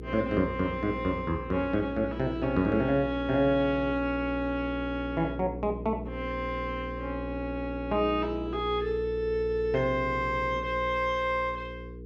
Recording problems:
hum; 60 Hz, harmonics up to 480 Hz, SNR 10 dB

